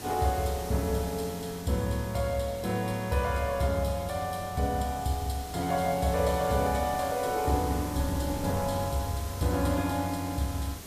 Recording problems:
background hiss; slope -3 dB per octave, SNR 13 dB
wind noise; below 260 Hz, SNR 17 dB

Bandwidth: 14.5 kHz